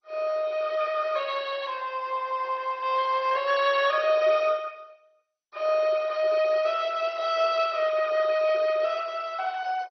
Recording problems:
lossy compression; MP2, log-spectral distance 3 dB

